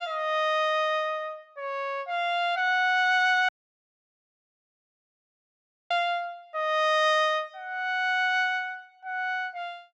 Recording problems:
dropout; at 3.5 s for 2.5 s

